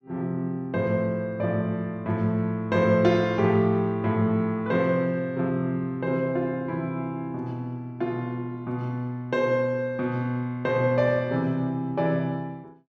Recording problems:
none

